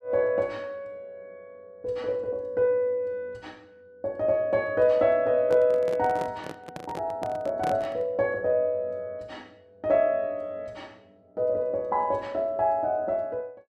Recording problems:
microphone handling noise; from 5.5 to 8 s; peak -5 dB vs average level

